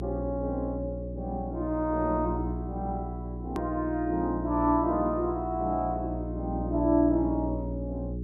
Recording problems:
hum; 60 Hz, harmonics up to 420 Hz, SNR 6 dB
click at an edit; at 3.5 s

